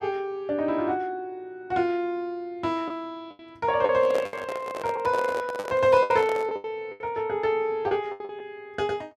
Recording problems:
lost packets; 7% of the sound replaced, filled with the last packet
microphone handling noise; from 4 to 6.5 s; peak -2 dB vs average level

